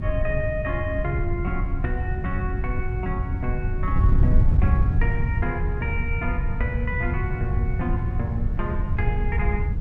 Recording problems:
wind noise; below 100 Hz, SNR -5 dB

